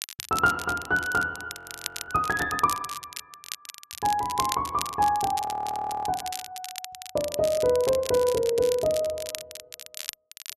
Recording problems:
crackling; vinyl, SNR 11 dB
audio freezing; at 1.5 s for 0.5 s and at 5.5 s for 0.5 s

